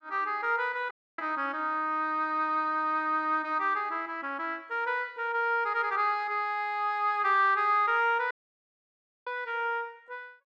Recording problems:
dropout; at 1 s and at 8.5 s for 1 s

